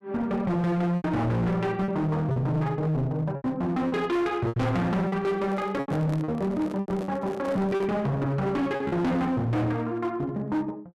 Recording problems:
distortion; hard clipping, uneven, signal-to-distortion ratio 6 dB
packet loss; 7% of the sound replaced, filled with repeated pitch periods
microphone handling noise; from 5.5 to 8 s; peak -7 dB vs average level

